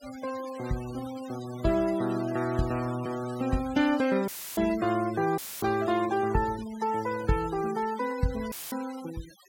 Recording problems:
denoising artefacts; signal-to-artefact ratio 16 dB
audio cutting out; at 4.5 s, at 5.5 s and at 8.5 s; filled with static

